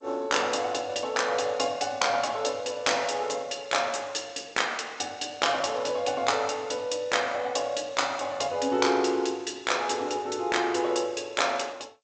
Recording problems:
codec artefacts; G.722, log-spectral distance 7 dB, nothing above 7.8 kHz

